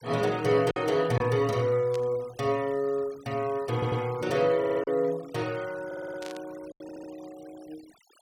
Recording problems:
noise reduction artefacts; signal-to-artefact ratio 22 dB
packet loss; 3% of the sound replaced, filled with silence
static burst; at 2 s and at 6 s; peak -11 dB vs average level
audio stuttering; 4 times, first at 3.5 s

